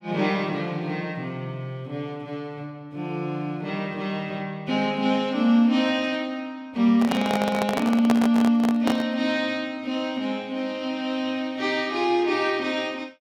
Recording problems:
handling noise; from 7 to 9 s; peak +4 dB vs average level

